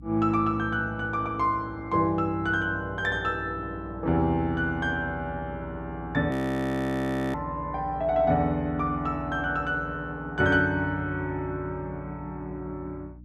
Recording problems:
mains hum; 60 Hz, harmonics up to 300 Hz, SNR 16 dB
frozen audio; at 6.5 s for 1 s

